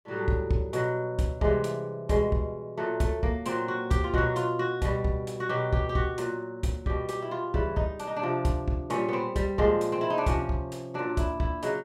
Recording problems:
none

